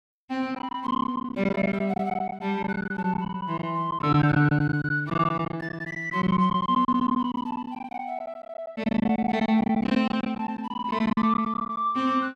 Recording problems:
packet loss; 16% of the sound replaced, filled with silence

